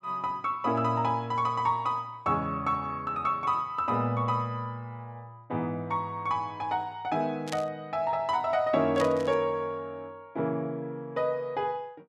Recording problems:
burst of static; at 7.5 s and at 9 s; peak -3 dB vs average level

